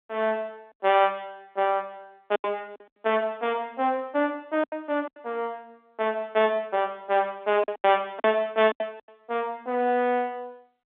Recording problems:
phone line; 220 Hz to 3.7 kHz, G.711
lost packets; 6% of the sound replaced, filled with silence

